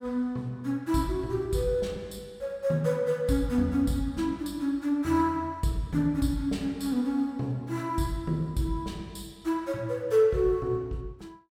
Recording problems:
none

